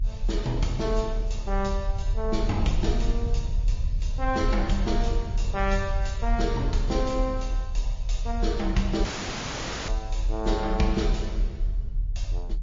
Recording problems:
codec artefacts; MP3, log-spectral distance 3 dB
low-frequency rumble; below 48 Hz, strongest tone 38 Hz, SNR 1 dB
dropout; at 9 s for 1 s

